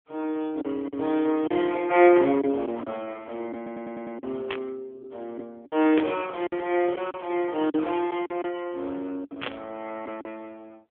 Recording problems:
telephone audio; 260 Hz to 3.3 kHz, AMR-NB
lost packets; 6% of the sound replaced, filled with silence
stutter; at 3.5 s
static burst; at 4.5 s, at 6 s and at 9.5 s; peak -2 dB vs average level

